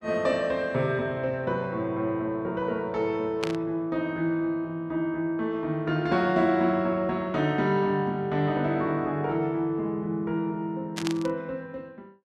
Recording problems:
static burst; at 3.5 s and at 11 s; peak 0 dB vs average level

